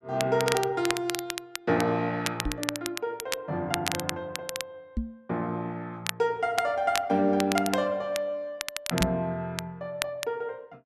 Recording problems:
crackle; vinyl, SNR 5 dB
microphone bump; at 2.5 s, at 5 s and at 9 s; peak +3 dB vs average level

